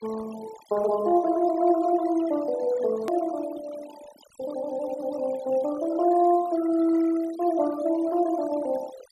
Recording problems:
noise reduction artefacts; signal-to-artefact ratio 18 dB
edit click; at 3 s

